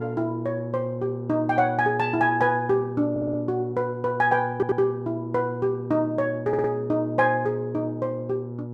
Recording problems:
electrical hum; 60 Hz, harmonics up to 960 Hz, SNR 9 dB
stutter; at 3 s, at 4.5 s and at 6.5 s

